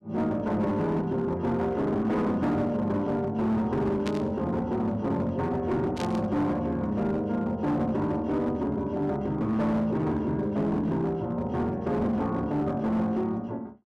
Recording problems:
distortion; hard clipping, signal-to-distortion ratio 12 dB
static burst; at 4 s and at 6 s; peak -5 dB vs average level

